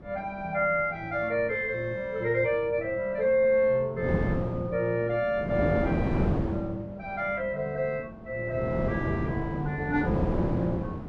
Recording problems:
wind on the microphone; below 400 Hz, SNR 2 dB

